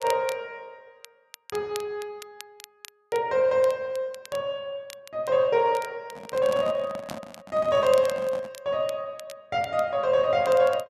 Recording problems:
crackle; vinyl, SNR 20 dB
microphone handling noise; from 6 to 8.5 s; peak -7 dB vs average level

